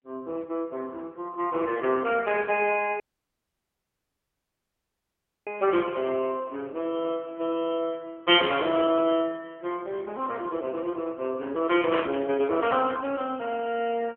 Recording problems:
telephone audio; 240 Hz to 3.4 kHz, AMR-NB
audio cutting out; at 3 s for 2.5 s
burst of static; at 12 s; peak -2 dB vs average level

